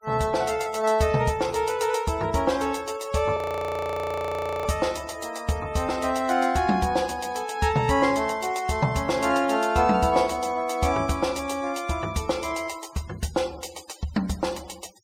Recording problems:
noise reduction artefacts; signal-to-artefact ratio 21 dB
audio freezing; at 3.5 s for 1.5 s

